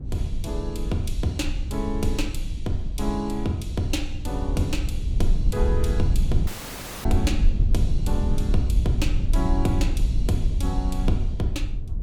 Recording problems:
rumble; below 68 Hz, SNR -2 dB
audio cutting out; at 6.5 s for 0.5 s

